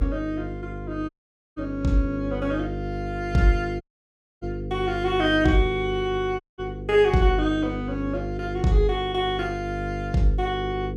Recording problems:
electrical hum; 50 Hz, harmonics up to 500 Hz, SNR 8 dB
dropout; at 1 s, at 4 s for 0.5 s and at 6.5 s

